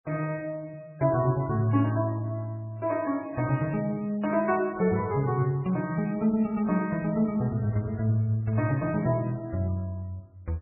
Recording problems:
lossy codec; MP3, log-spectral distance 2 dB, nothing above 2.5 kHz

